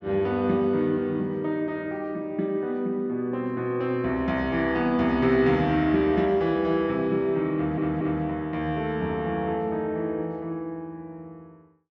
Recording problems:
stutter; at 7.5 s

